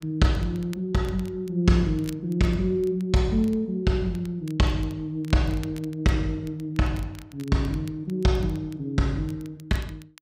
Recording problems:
crackling; vinyl, SNR 25 dB

